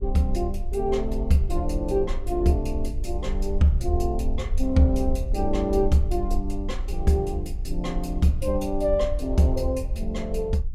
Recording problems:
low-frequency rumble; below 56 Hz, SNR 6 dB

